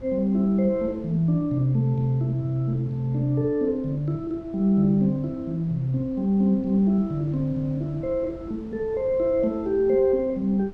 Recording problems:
wind on the microphone; below 270 Hz, SNR 21 dB

